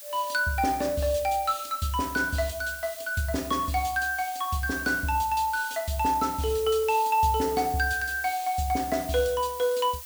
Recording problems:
background hiss; slope +3 dB per octave, SNR 13 dB

